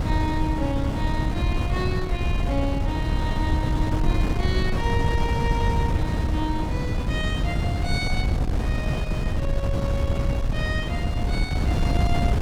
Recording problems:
wind on the microphone; below 150 Hz, SNR -6 dB

